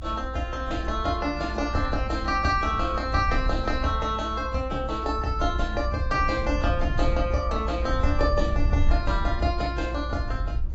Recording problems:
lossy compression; AAC, log-spectral distance 2 dB, nothing above 7.6 kHz
rumble; below 64 Hz, SNR 3 dB

